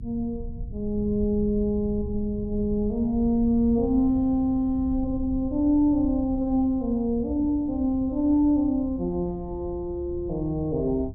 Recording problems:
low-frequency rumble; below 92 Hz, SNR 13 dB

